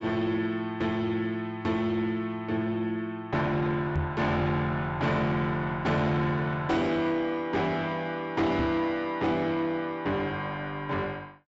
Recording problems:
treble cut off; nothing above 8 kHz
distorted audio; soft clipping, signal-to-distortion ratio 11 dB
knock on the microphone; at 4 s and at 8.5 s; peak +2 dB vs average level

